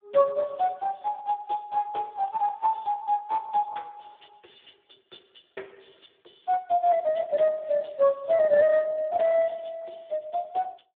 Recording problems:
phone line; 280 Hz to 3.5 kHz, Speex

